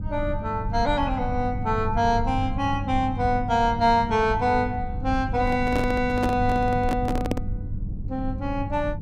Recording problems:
electrical hum; 50 Hz, harmonics up to 500 Hz, SNR 11 dB
rumble; below 100 Hz, SNR 9 dB
microphone handling noise; from 5.5 to 7.5 s; peak +1 dB vs average level

